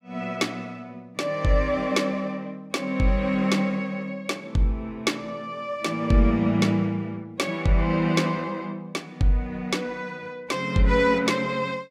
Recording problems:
none

